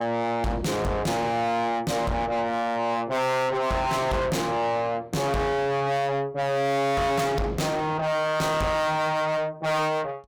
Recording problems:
distorted audio; soft clipping, signal-to-distortion ratio 6 dB

